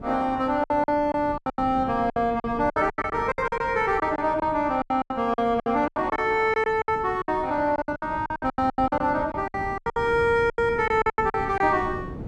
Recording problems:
wind noise; below 320 Hz, SNR 16 dB
lost packets; 18% of the sound replaced, filled with silence

